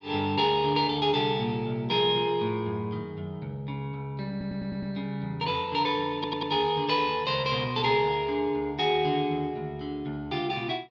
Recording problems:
stutter; at 4.5 s and at 6 s

